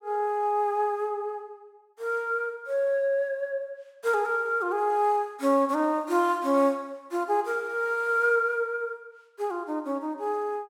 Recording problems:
none

